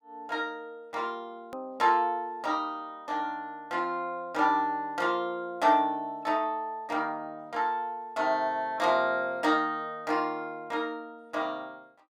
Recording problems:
edit click; at 1.5 s

